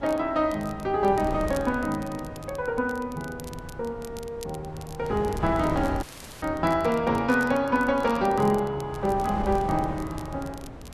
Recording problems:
wind noise; below 440 Hz, SNR 12 dB
crackling; vinyl, SNR 22 dB
dropout; at 6 s

